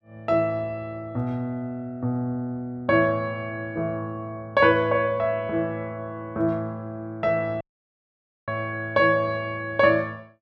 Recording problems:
audio cutting out; at 7.5 s for 1 s

